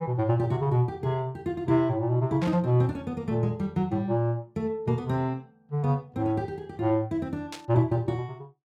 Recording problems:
burst of static; at 2.5 s and at 7.5 s; peak -7 dB vs average level

